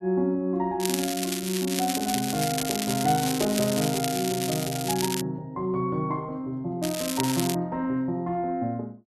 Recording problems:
crackle; from 1 to 5 s and at 7 s; loose cable, SNR 3 dB

